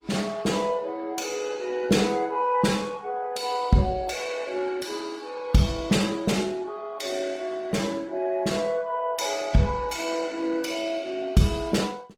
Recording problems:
lossy compression; Opus, log-spectral distance 4 dB, nothing above 18 kHz

